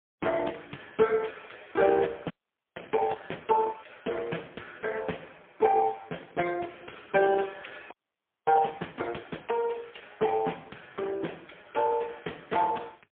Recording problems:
telephone audio; 280 Hz to 3.3 kHz, AMR-NB, then MP3
audio freezing; at 2.5 s and at 8 s for 0.5 s

